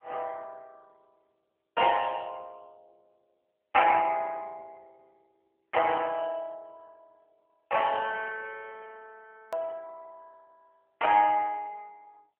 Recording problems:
telephone audio; 340 Hz to 3.2 kHz, AMR-NB
click at an edit; at 9.5 s

